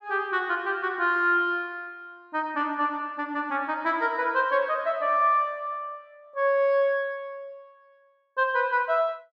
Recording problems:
none

